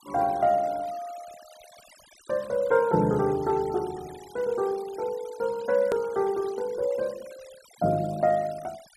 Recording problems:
noise reduction artefacts; signal-to-artefact ratio 22 dB
click at an edit; at 6 s

